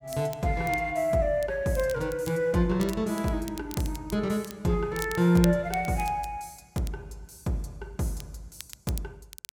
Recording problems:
crackle; vinyl, SNR 17 dB

